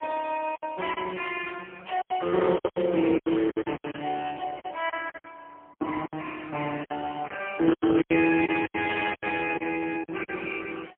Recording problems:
phone line; 190 Hz to 3.1 kHz, AMR-NB, then MP3
packet loss; 12% of the sound replaced, filled with silence

